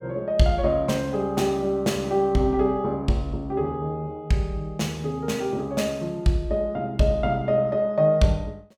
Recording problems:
none

